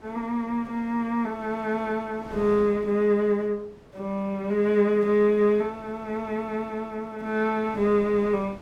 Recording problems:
wind noise; below 760 Hz, SNR 22 dB

